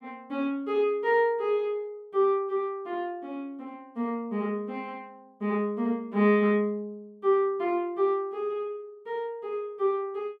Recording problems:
none

